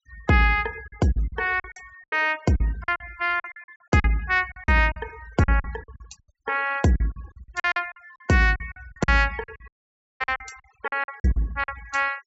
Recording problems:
treble cut off; nothing above 7.5 kHz
noise reduction artefacts; signal-to-artefact ratio 23 dB
lost packets; 16% of the sound replaced, filled with silence
audio cutting out; at 9.5 s for 0.5 s

